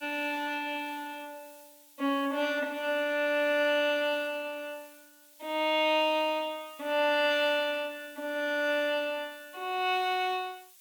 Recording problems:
background hiss; slope +4 dB per octave, SNR 24 dB

